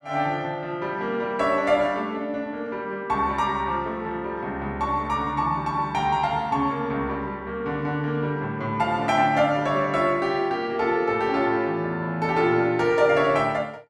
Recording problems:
none

